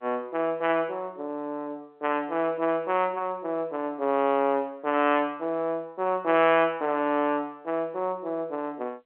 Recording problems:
phone line; 220 Hz to 3.3 kHz, G.711

